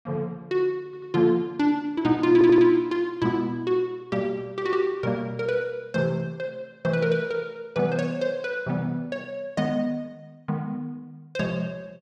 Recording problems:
audio stuttering; at 1 s and at 2.5 s

